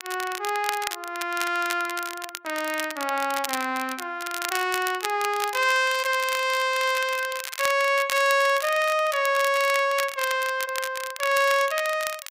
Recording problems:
crackling; vinyl, SNR 10 dB

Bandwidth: 15.5 kHz